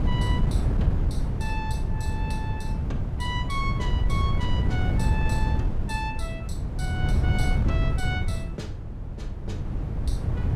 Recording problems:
wind noise; below 130 Hz, SNR -8 dB

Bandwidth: 14.5 kHz